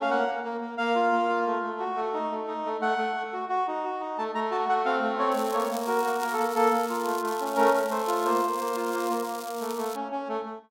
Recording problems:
crackle; from 5.5 to 10 s; loose cable, SNR 14 dB

